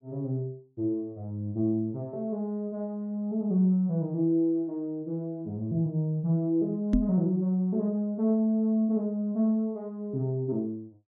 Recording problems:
knock on the microphone; at 7 s; peak +7 dB vs average level

